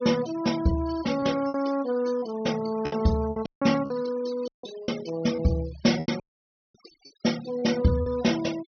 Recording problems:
treble cut off; nothing above 6.1 kHz
denoising artefacts; signal-to-artefact ratio 16 dB
lost packets; 6% of the sound replaced, filled with repeated pitch periods
dropout; at 3.5 s, at 4.5 s and at 6 s for 0.5 s

